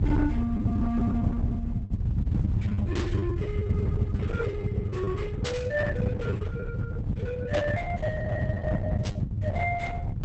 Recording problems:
codec artefacts; Opus, log-spectral distance 2 dB, nothing above 8 kHz
distortion; hard clipping, signal-to-distortion ratio 12 dB
rumble; below 150 Hz, SNR -3 dB
packet loss; 18% of the sound replaced, filled with the last packet
burst of static; 4 times, first at 3 s; peak +1 dB vs average level

